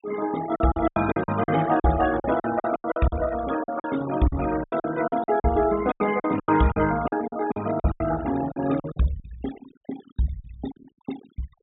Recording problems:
treble cut off; nothing above 4 kHz
noise reduction artefacts; signal-to-artefact ratio 13 dB
lost packets; 15% of the sound replaced, filled with silence

